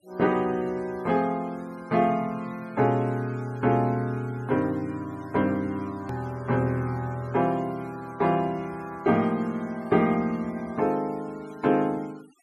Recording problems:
noise reduction artefacts; signal-to-artefact ratio 25 dB
hard cut with a click; at 6 s

